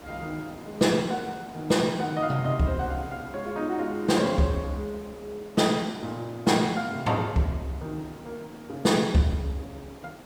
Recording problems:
hiss; slope -6 dB per octave, SNR 20 dB

